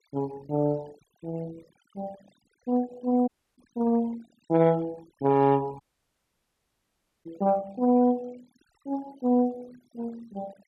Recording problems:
noise reduction artefacts; signal-to-artefact ratio 25 dB
dropout; at 3.5 s and at 6 s for 1.5 s

